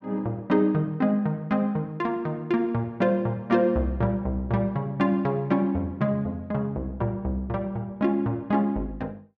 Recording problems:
none

